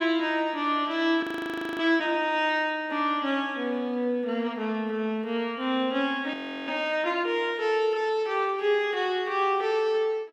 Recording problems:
frozen audio; at 1 s for 0.5 s and at 6.5 s

